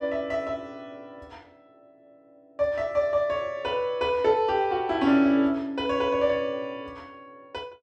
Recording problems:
none

